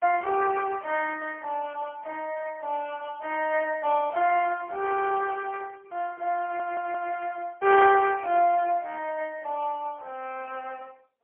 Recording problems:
telephone audio; 340 Hz to 3.4 kHz, AMR-NB, then MP3
stutter; at 6.5 s

